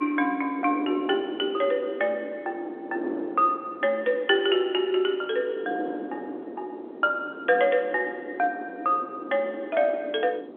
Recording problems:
telephone audio; 260 Hz to 3.6 kHz, G.711
wind on the microphone; below 470 Hz, SNR 12 dB

